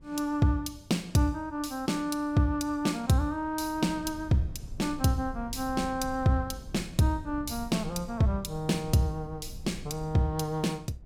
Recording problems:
low-frequency rumble; below 100 Hz, SNR 17 dB

